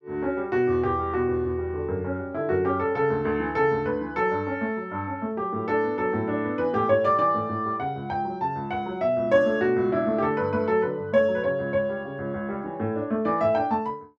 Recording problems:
none

